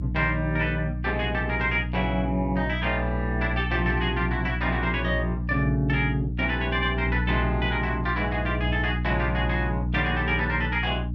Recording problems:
hum; 60 Hz, harmonics up to 300 Hz, SNR 3 dB

